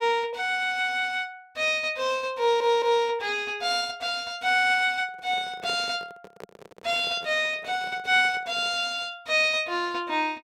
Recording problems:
audio stuttering; at 2.5 s
handling noise; from 5 to 9 s; peak -10 dB vs average level

